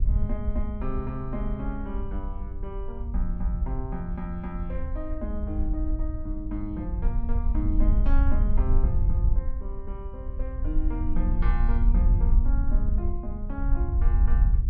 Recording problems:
wind on the microphone; below 56 Hz, SNR -7 dB

